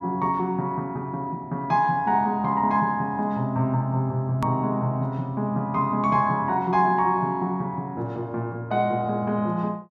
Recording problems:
hard cut with a click; at 4.5 s

